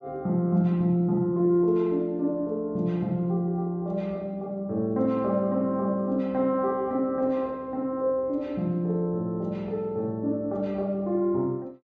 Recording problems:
low-pass filter; nothing above 8 kHz

